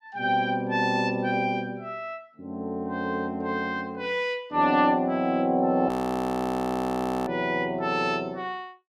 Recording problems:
audio freezing; at 6 s for 1.5 s

